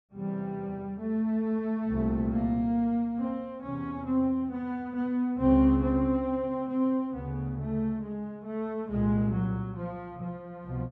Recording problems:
none

